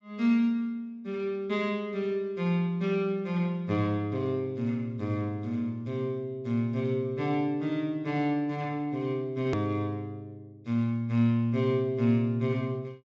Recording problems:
treble cut off; nothing above 8 kHz
hard cut with a click; at 9.5 s

